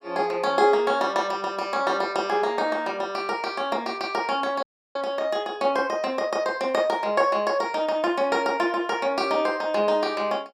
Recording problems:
audio cutting out; at 4.5 s

